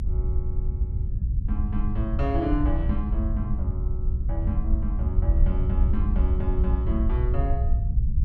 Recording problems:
low-frequency rumble; below 74 Hz, SNR -6 dB

